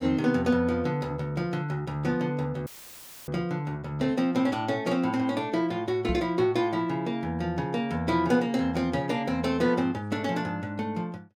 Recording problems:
audio cutting out; at 2.5 s for 0.5 s; filled with static
microphone thump; at 6 s; peak 0 dB vs average level

